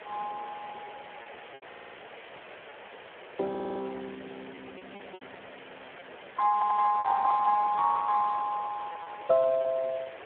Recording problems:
telephone audio; 340 Hz to 2.1 kHz, Speex
background hiss; SNR 18 dB
lost packets; 6% of the sound replaced, filled with repeated pitch periods
audio stuttering; at 1.5 s, at 3.5 s and at 6.5 s

